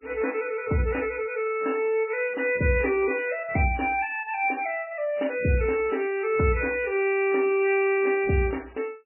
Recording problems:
lossy codec; MP3, log-spectral distance 4 dB, nothing above 2.4 kHz

